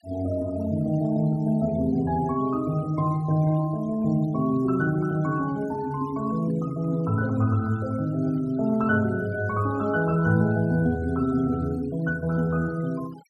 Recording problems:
noise reduction artefacts; signal-to-artefact ratio 25 dB

